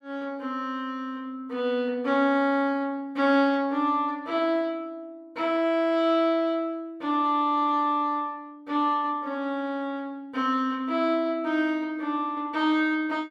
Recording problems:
none

